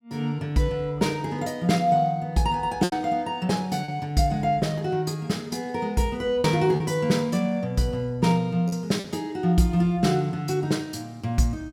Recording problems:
packet loss; 2% of the sound replaced, filled with repeated pitch periods

